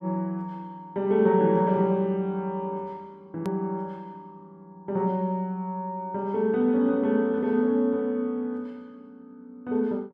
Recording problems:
edit click; at 3.5 s

